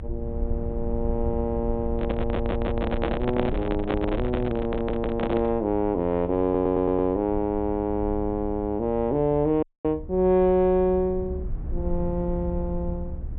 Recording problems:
low-pass filter; nothing above 4 kHz
rumble; below 70 Hz, SNR 9 dB
microphone handling noise; from 2 to 5.5 s; peak +2 dB vs average level
audio stuttering; at 2 s, at 4.5 s and at 6.5 s
audio cutting out; at 9.5 s

